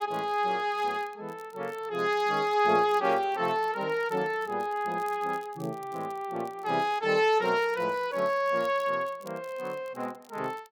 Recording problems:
crackle; vinyl, SNR 28 dB

